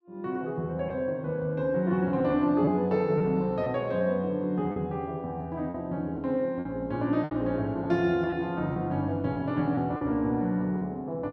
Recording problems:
lost packets; 4% of the sound replaced, filled with repeated pitch periods

